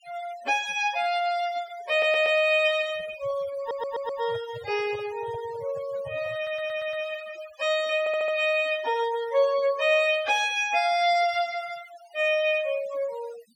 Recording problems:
noise reduction artefacts; signal-to-artefact ratio 19 dB
stutter; 4 times, first at 2 s
microphone handling noise; from 3 to 7 s; peak -14 dB vs average level

